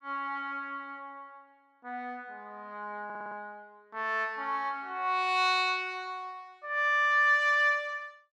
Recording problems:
stutter; at 3 s

